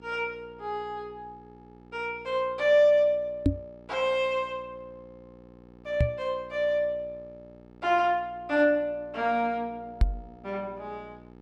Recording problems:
hum; 60 Hz, harmonics up to 1.7 kHz, SNR 24 dB
knock on the microphone; at 3.5 s, at 6 s and at 10 s; peak +8 dB vs average level

